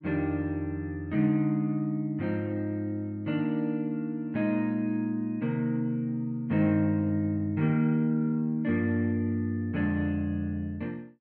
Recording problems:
none

